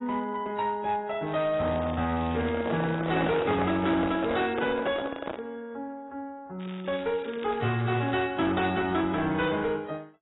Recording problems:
lossy compression; AAC, log-spectral distance 5 dB, nothing above 3.4 kHz
distortion; hard clipping, uneven, signal-to-distortion ratio 10 dB
crackle; from 1.5 to 5 s and from 6.5 to 8 s; loose cable, SNR 19 dB
microphone handling noise; from 2.5 to 5.5 s; peak 0 dB vs average level

